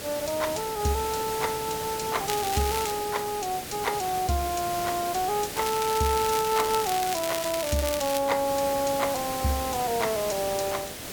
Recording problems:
hiss; SNR 6 dB
crackling; at 2.5 s and from 5.5 to 8 s; loose cable, SNR 6 dB

